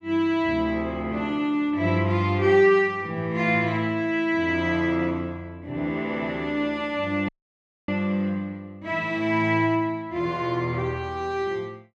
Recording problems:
audio cutting out; at 7.5 s for 0.5 s

